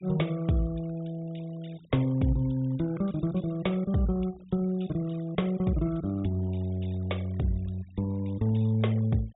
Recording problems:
treble cut off; nothing above 4 kHz
noise reduction artefacts; signal-to-artefact ratio 25 dB

